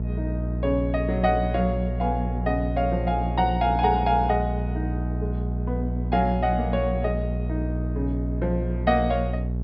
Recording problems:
low-pass filter; nothing above 5.5 kHz
hum; 60 Hz, harmonics up to 480 Hz, SNR 2 dB

